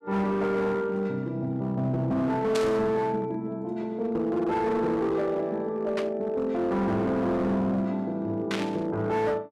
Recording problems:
distortion; hard clipping, signal-to-distortion ratio 11 dB
static burst; at 2.5 s, at 6 s and at 8.5 s; peak -2 dB vs average level

